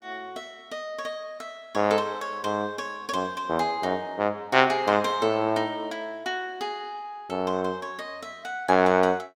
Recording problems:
none

